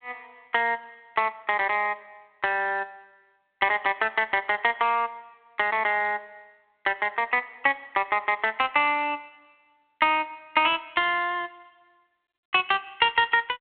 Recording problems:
telephone audio; 260 Hz to 3.5 kHz, G.726

